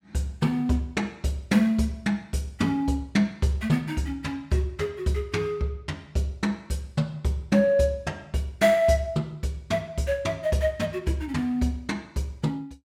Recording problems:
none

